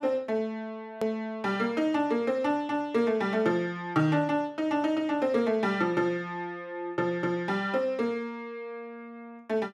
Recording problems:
click at an edit; at 1 s

